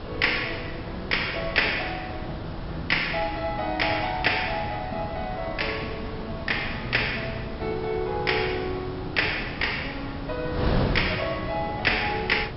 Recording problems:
treble missing; nothing above 5.3 kHz
wind noise; below 550 Hz, SNR 7 dB

